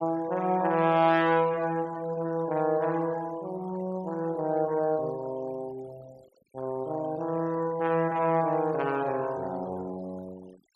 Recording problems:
noise reduction artefacts; signal-to-artefact ratio 24 dB

